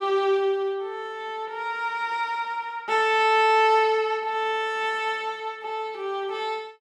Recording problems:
none

